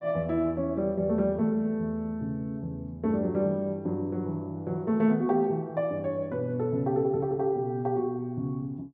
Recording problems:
none

